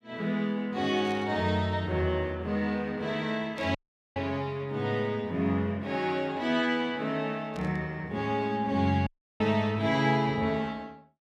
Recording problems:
static burst; at 1 s, at 3.5 s and at 7.5 s; peak -14 dB vs average level
audio cutting out; at 4 s and at 9 s

